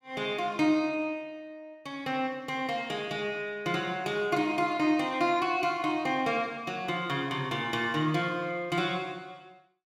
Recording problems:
none

